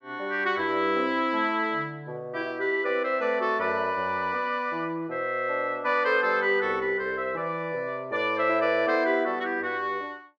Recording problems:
none

